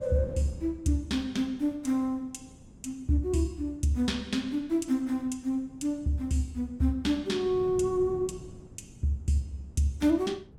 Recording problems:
wind on the microphone; below 240 Hz, SNR 19 dB

